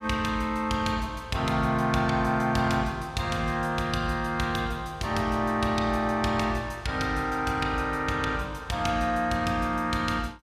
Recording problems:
none

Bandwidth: 14.5 kHz